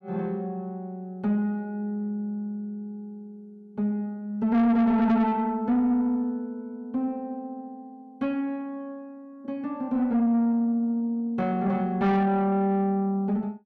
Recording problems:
distorted audio; soft clipping, signal-to-distortion ratio 7 dB

